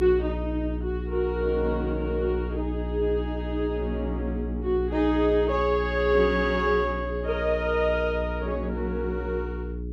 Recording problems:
hum; 60 Hz, harmonics up to 420 Hz, SNR 6 dB

